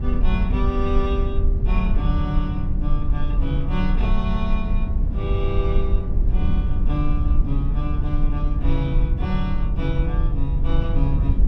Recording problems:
rumble; below 64 Hz, SNR -4 dB
wind on the microphone; below 54 Hz, SNR 6 dB

